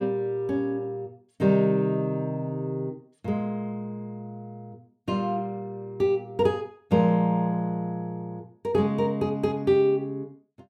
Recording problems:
none

